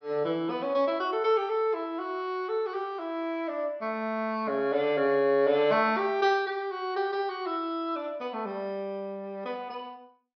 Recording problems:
treble cut off; nothing above 6 kHz

